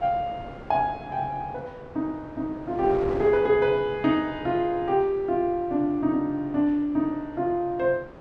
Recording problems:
wind on the microphone; below 730 Hz, SNR 16 dB

